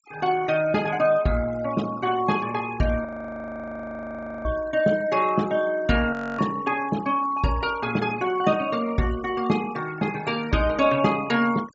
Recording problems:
treble missing; nothing above 8 kHz
denoising artefacts; signal-to-artefact ratio 18 dB
audio freezing; at 3 s for 1.5 s and at 6 s

